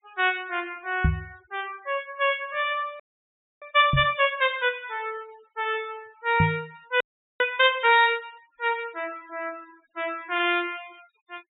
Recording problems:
treble missing; nothing above 4 kHz
noise reduction artefacts; signal-to-artefact ratio 26 dB
microphone thump; at 1 s, at 4 s and at 6.5 s; peak +6 dB vs average level
frozen audio; at 3 s for 0.5 s and at 7 s

